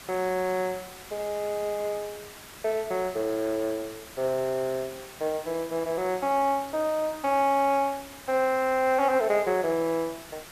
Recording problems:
background hiss; slope -2 dB per octave, SNR 16 dB

